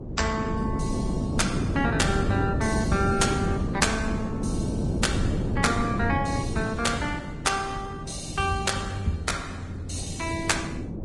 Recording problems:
lossy compression; Opus, then Vorbis, log-spectral distance 4 dB, nothing above 10.7 kHz
electrical hum; 50 Hz, harmonics up to 300 Hz, SNR 19 dB
wind noise; below 290 Hz, SNR 2 dB

